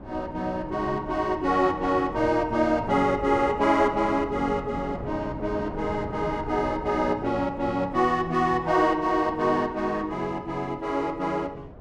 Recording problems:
wind on the microphone; below 500 Hz, SNR 14 dB

